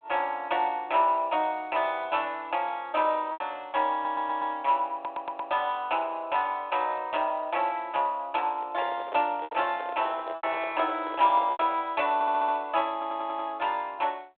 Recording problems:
telephone audio; 280 Hz to 3.6 kHz, G.726
packet loss; 3% of the sound replaced, filled with repeated pitch periods
stutter; 4 times, first at 4 s
handling noise; from 8.5 to 12 s; peak -6 dB vs average level

